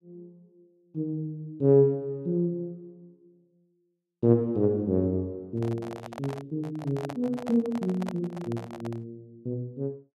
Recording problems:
microphone handling noise; from 5.5 to 9 s; peak -5 dB vs average level

